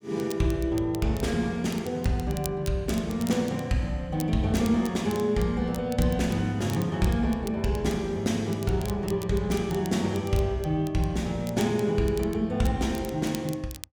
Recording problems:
crackling; vinyl, SNR 18 dB

